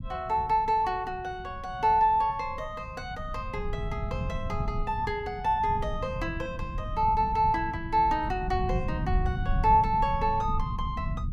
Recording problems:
rumble; below 130 Hz, SNR 7 dB

